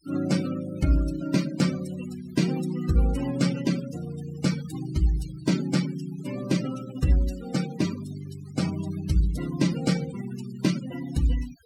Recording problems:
denoising artefacts; signal-to-artefact ratio 12 dB

